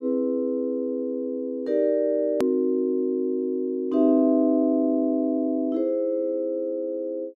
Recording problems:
click at an edit; at 2.5 s

